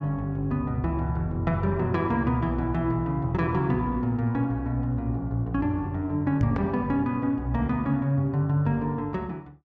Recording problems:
microphone thump; at 6.5 s; peak +5 dB vs average level

